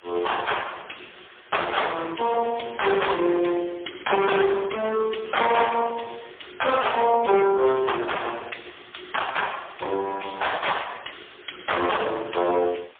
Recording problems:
telephone audio; 280 Hz to 3.5 kHz, AMR-NB, then MP3
distortion; hard clipping, uneven, signal-to-distortion ratio 8 dB
background hiss; SNR 27 dB

